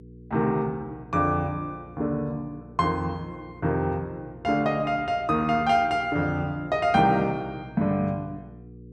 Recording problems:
hum; 60 Hz, harmonics up to 480 Hz, SNR 20 dB

